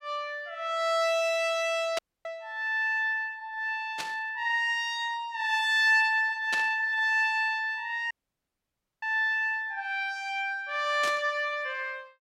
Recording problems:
static burst; 4 times, first at 2 s; peak -1 dB vs average level
dropout; at 2 s and at 8 s for 1 s

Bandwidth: 16.5 kHz